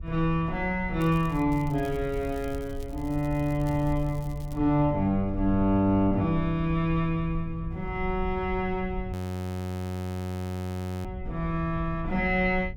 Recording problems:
wind on the microphone; below 94 Hz, SNR 10 dB
crackle; from 1 to 4.5 s; loose cable, SNR 25 dB
frozen audio; at 9 s for 2 s

